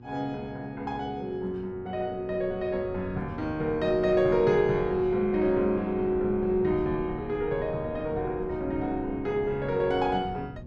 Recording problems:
hum; 60 Hz, harmonics up to 720 Hz, SNR 21 dB
wind on the microphone; below 180 Hz, SNR 16 dB

